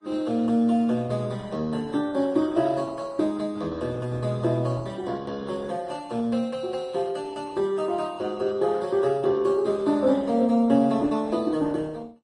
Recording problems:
codec artefacts; Opus, then Vorbis, log-spectral distance 3 dB, nothing above 10.1 kHz

